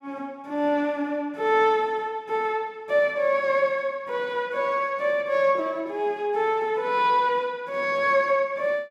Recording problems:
none

